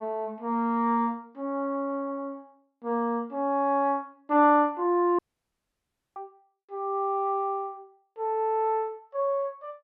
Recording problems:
dropout; at 5 s for 1 s

